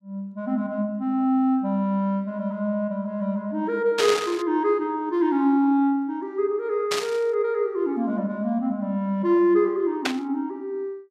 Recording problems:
static burst; at 4 s, at 7 s and at 10 s; peak +3 dB vs average level

